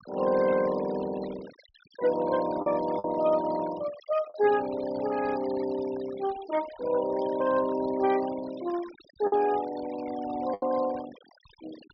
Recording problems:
low-pass filter; nothing above 5.5 kHz
noise reduction artefacts; signal-to-artefact ratio 18 dB
lost packets; 2% of the sound replaced, filled with the last packet

